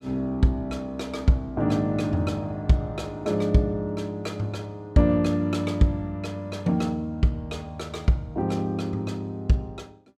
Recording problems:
none

